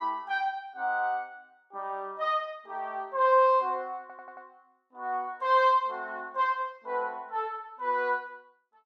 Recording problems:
audio stuttering; at 4 s

